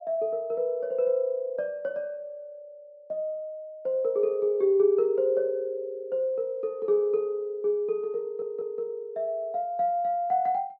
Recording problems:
stutter; at 8 s

